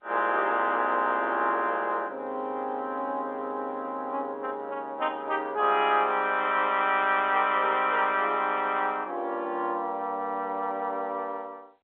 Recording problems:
telephone audio; 150 Hz to 3.5 kHz, G.711

